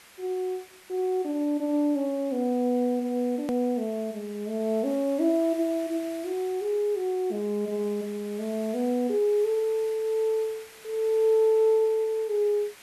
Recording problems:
hiss; SNR 21 dB
hard cut with a click; at 3.5 s

